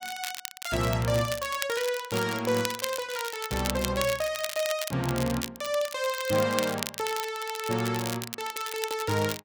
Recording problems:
crackling; vinyl, SNR 7 dB

